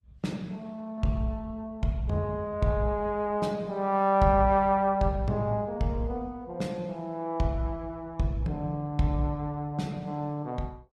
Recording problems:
lossy compression; Opus, log-spectral distance 2 dB, nothing above 12 kHz

